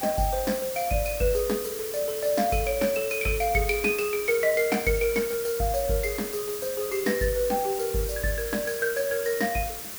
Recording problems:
hiss; SNR 7 dB

